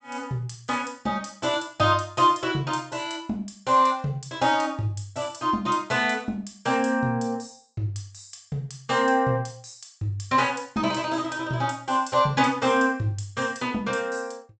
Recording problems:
low-pass filter; nothing above 8 kHz

